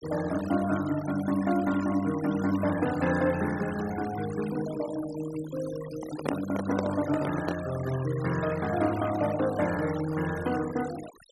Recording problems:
noise reduction artefacts; signal-to-artefact ratio 14 dB
microphone handling noise; from 6 to 7.5 s; peak +3 dB vs average level

